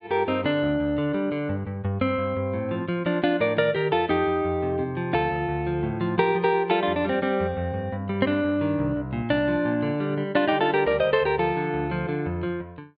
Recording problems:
treble cut off; nothing above 4.6 kHz

